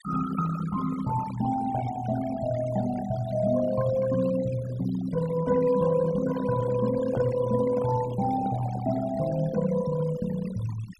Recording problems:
noise reduction artefacts; signal-to-artefact ratio 15 dB
handling noise; from 5.5 to 9 s; peak -3 dB vs average level

